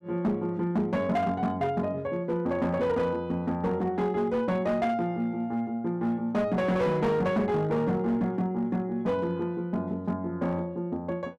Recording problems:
distortion; hard clipping, signal-to-distortion ratio 12 dB

